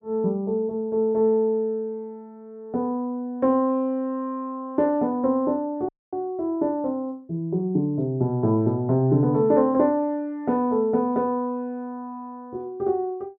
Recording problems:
dropout; at 6 s

